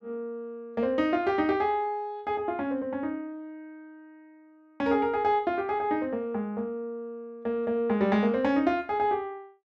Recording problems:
none

